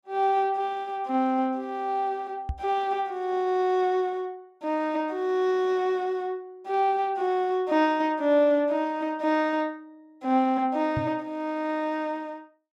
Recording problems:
knock on the microphone; at 2.5 s and at 11 s; peak -1 dB vs average level

